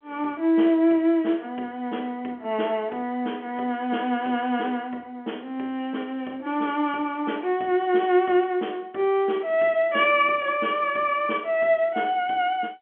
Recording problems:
telephone audio; 220 Hz to 3.3 kHz, G.711

